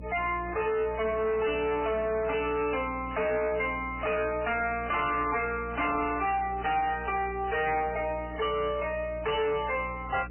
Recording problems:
lossy codec; MP3, log-spectral distance 5 dB, nothing above 2.7 kHz
distorted audio; hard clipping, signal-to-distortion ratio 10 dB
hum; 60 Hz, harmonics up to 540 Hz, SNR 14 dB
crackle; at 8 s; loose cable, SNR 27 dB

